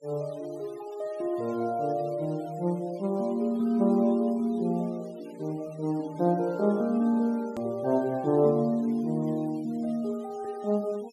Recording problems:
noise reduction artefacts; signal-to-artefact ratio 25 dB
hard cut with a click; at 7.5 s

